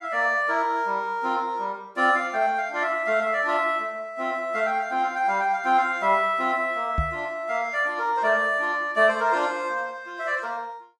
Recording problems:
knock on the microphone; at 7 s; peak +1 dB vs average level

